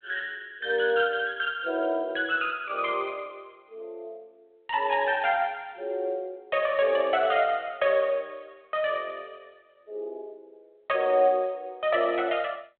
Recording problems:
phone line; 370 Hz to 3.5 kHz, G.726

